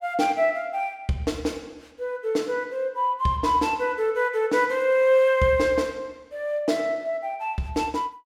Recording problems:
none

